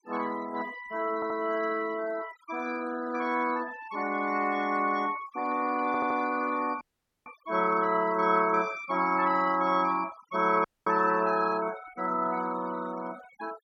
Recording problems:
noise reduction artefacts; signal-to-artefact ratio 18 dB
stutter; at 1 s and at 6 s
dropout; at 7 s and at 11 s

